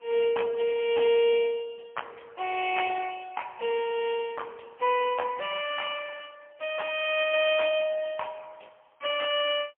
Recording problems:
telephone audio; 220 Hz to 3.3 kHz, AMR-NB, then MP3

